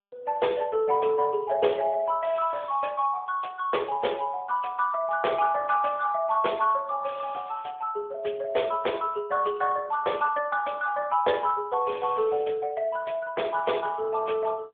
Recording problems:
telephone audio; 320 Hz to 3.4 kHz, AMR-NB

